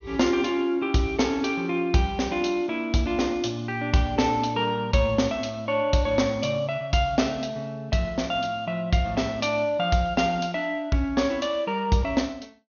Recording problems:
treble cut off; nothing above 6.7 kHz

